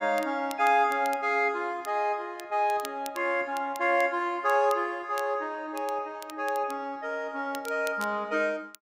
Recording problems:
crackle; vinyl, SNR 20 dB

